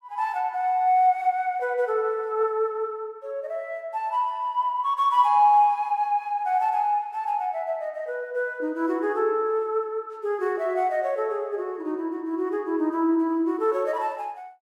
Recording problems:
none

